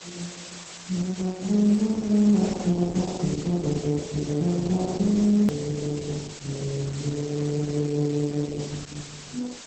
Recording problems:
codec artefacts; Opus, then Opus, log-spectral distance 13 dB, nothing above 16.6 kHz
background hiss; slope 0 dB per octave, SNR 15 dB
hard cut with a click; at 5.5 s

